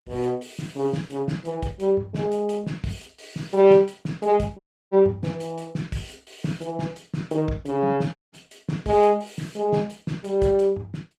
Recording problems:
lossy compression; Opus, log-spectral distance 3 dB, nothing above 15.5 kHz
dropout; at 4.5 s and at 8 s

